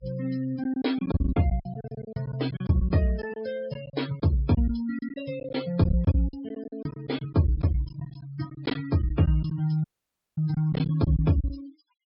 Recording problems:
low-pass filter; nothing above 5.5 kHz
noise reduction artefacts; signal-to-artefact ratio 20 dB
lost packets; 12% of the sound replaced, filled with silence
dropout; at 10 s for 0.5 s

